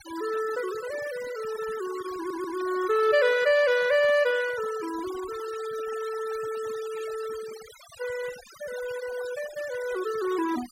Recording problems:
denoising artefacts; signal-to-artefact ratio 15 dB
stutter; at 2 s

